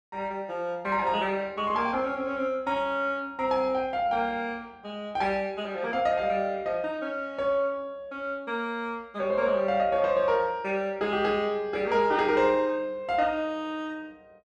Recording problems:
none

